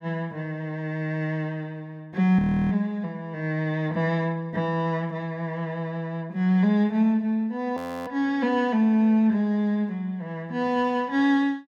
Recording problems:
audio freezing; at 2.5 s and at 8 s

